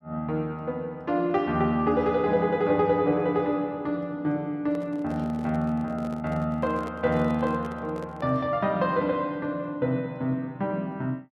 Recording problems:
microphone handling noise; from 4.5 to 8.5 s; peak -9 dB vs average level

